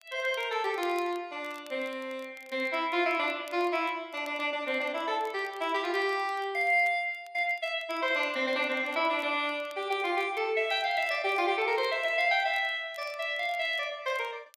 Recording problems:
crackle; vinyl, SNR 26 dB

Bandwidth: 15 kHz